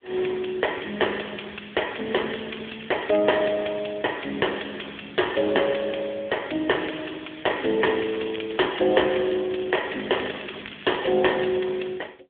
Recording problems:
phone line; 280 Hz to 3.4 kHz, AMR-NB
crackling; from 2 to 3.5 s, from 7.5 to 9 s and from 9.5 to 11 s; loose cable, SNR 17 dB

